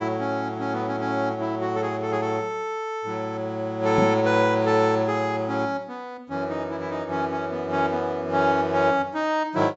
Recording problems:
low-pass filter; nothing above 8 kHz
microphone bump; at 4 s; peak +4 dB vs average level

